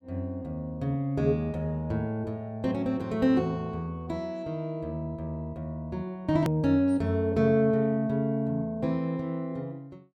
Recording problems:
edit click; at 6.5 s

